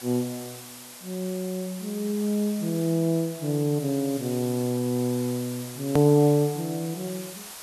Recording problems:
hiss; slope 0 dB per octave, SNR 14 dB
click at an edit; at 6 s

